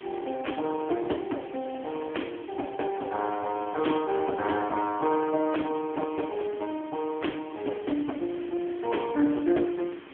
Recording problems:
telephone audio; 240 Hz to 3.3 kHz, AMR-NB
background hiss; SNR 17 dB

